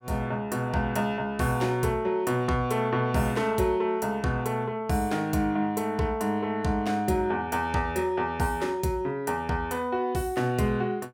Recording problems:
none

